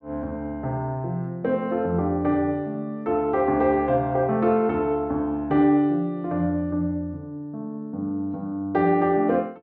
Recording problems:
none

